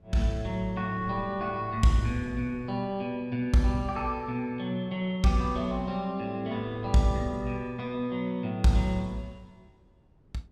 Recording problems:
wind noise; below 230 Hz, SNR 20 dB

